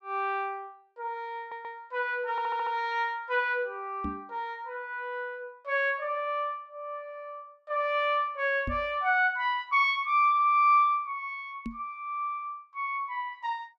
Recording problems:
audio stuttering; at 1.5 s and at 2.5 s
microphone thump; at 4 s, at 8.5 s and at 12 s; peak -3 dB vs average level

